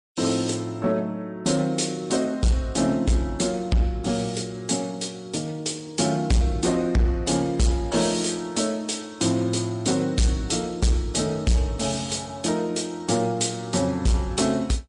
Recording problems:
lossy compression; MP3, log-spectral distance 4 dB, nothing above 8.7 kHz
distortion; hard clipping, signal-to-distortion ratio 10 dB

